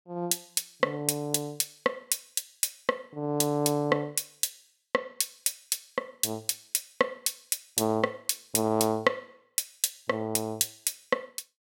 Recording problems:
none

